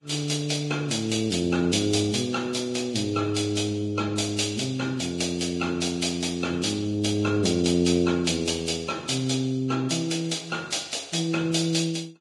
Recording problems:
lossy compression; Vorbis, log-spectral distance 5 dB, nothing above 10.7 kHz

